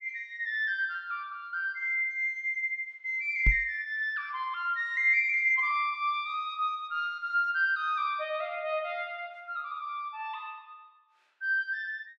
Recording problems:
microphone bump; at 3.5 s; peak +5 dB vs average level

